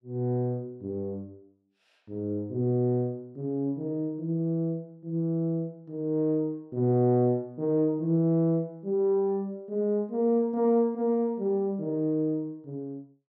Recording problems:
none

